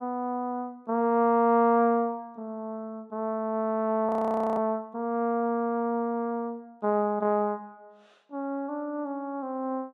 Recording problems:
frozen audio; at 4 s

